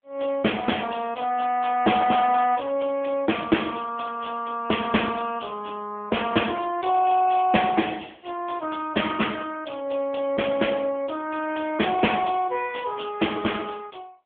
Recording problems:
telephone audio; 190 Hz to 3.4 kHz, AMR-NB

